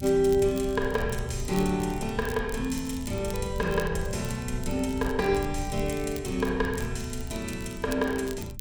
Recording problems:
low-frequency rumble; below 100 Hz, SNR 10 dB
crackling; vinyl, SNR 18 dB

